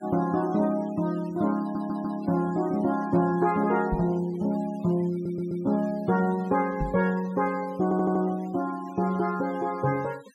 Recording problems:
noise reduction artefacts; signal-to-artefact ratio 22 dB
audio stuttering; at 1.5 s, at 5 s and at 8 s
knock on the microphone; at 4 s and at 7 s; peak 0 dB vs average level

